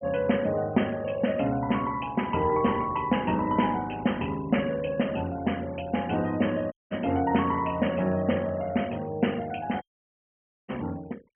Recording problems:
treble cut off; nothing above 3.2 kHz
denoising artefacts; signal-to-artefact ratio 23 dB
audio cutting out; at 6.5 s and at 10 s for 1 s

